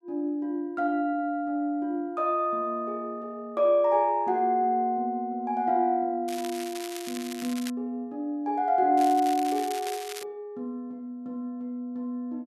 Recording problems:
crackle; from 6.5 to 7.5 s and from 9 to 10 s; loose cable, SNR 12 dB

